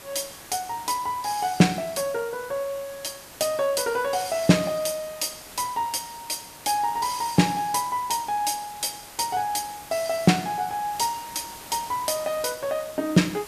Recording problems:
hiss; slope -2 dB per octave, SNR 16 dB

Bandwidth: 14.5 kHz